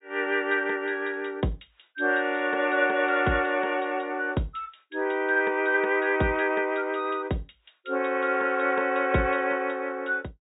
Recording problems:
treble cut off; nothing above 4 kHz

